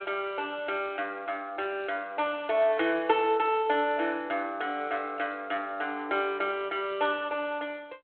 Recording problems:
telephone audio; 300 Hz to 3.5 kHz, G.726

